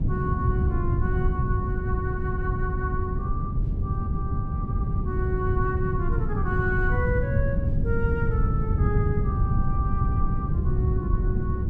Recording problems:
wind noise; below 130 Hz, SNR -6 dB

